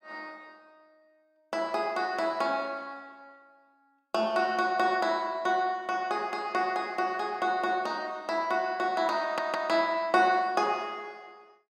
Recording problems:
stutter; at 9 s

